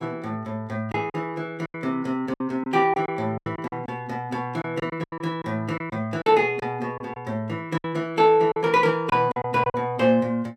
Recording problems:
lost packets; 9% of the sound replaced, filled with silence

